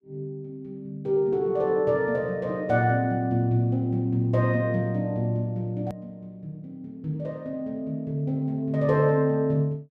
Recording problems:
click at an edit; at 6 s

